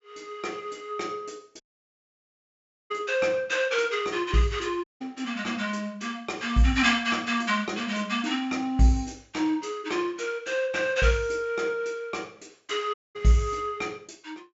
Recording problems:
low-pass filter; nothing above 7.4 kHz
dropout; at 1.5 s for 1.5 s, at 5 s and at 13 s

